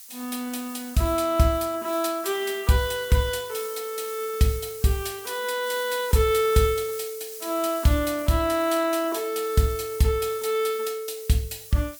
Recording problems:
background hiss; slope +6 dB per octave, SNR 14 dB

